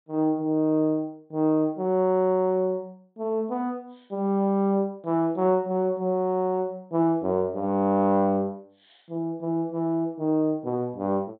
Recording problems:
treble cut off; nothing above 4 kHz

